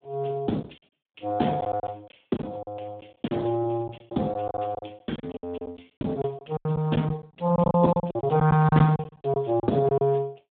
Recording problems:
phone line; 130 Hz to 2.1 kHz, Speex
packet loss; 13% of the sound replaced, filled with silence

